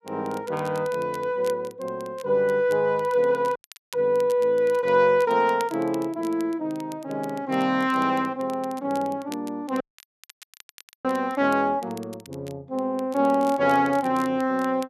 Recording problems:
crackle; vinyl, SNR 24 dB
dropout; at 3.5 s and at 10 s for 1.5 s

